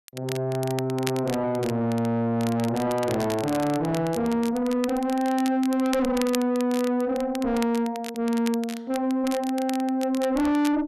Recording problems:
distorted audio; soft clipping, signal-to-distortion ratio 6 dB
crackle; vinyl, SNR 14 dB

